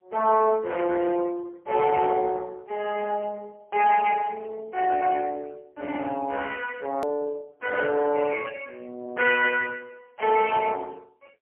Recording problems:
phone line; 300 Hz to 2.9 kHz, AMR-NB, then MP3
edit click; at 7 s

